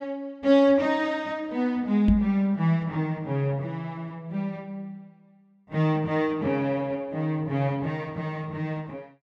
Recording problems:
knock on the microphone; at 2 s; peak +6 dB vs average level

